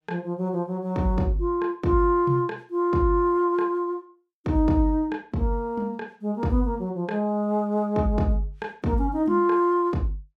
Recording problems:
none

